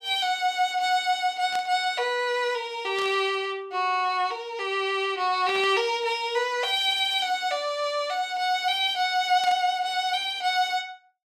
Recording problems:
static burst; 4 times, first at 1.5 s; peak -8 dB vs average level

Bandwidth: 16.5 kHz